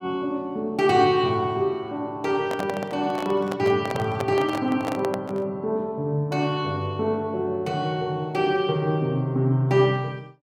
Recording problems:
handling noise; from 2.5 to 5.5 s; peak -2 dB vs average level

